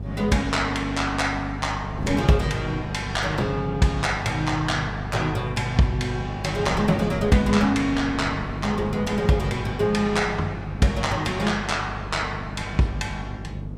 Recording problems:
hum; 50 Hz, harmonics up to 450 Hz, SNR 10 dB
wind on the microphone; below 270 Hz, SNR 12 dB

